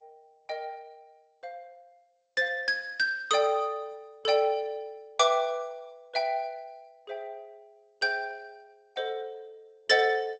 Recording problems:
lossy codec; Opus, then G.722, log-spectral distance 2 dB, nothing above 6.9 kHz

